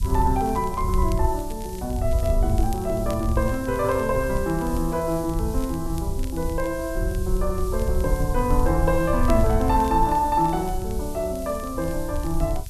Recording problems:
background hiss; SNR 17 dB
low-frequency rumble; below 74 Hz, SNR 4 dB
crackle; vinyl, SNR 24 dB

